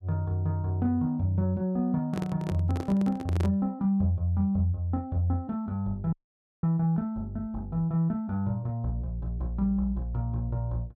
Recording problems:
handling noise; from 2 to 3.5 s; peak -3 dB vs average level
dropout; at 6 s for 0.5 s

